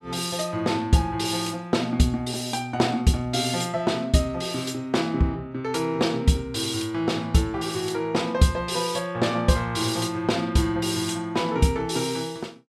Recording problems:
none

